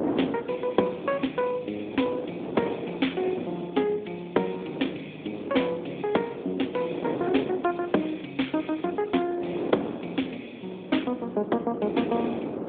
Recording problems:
phone line; 190 Hz to 3.6 kHz, AMR-NB
wind noise; below 540 Hz, SNR 7 dB

